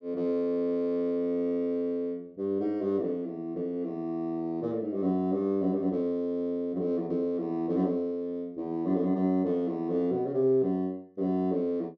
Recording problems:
none

